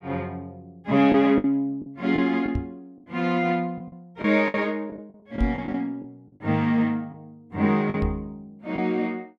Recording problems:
packet loss; 6% of the sound replaced, filled with the last packet
microphone bump; at 2.5 s, at 5.5 s and at 8 s; peak +1 dB vs average level

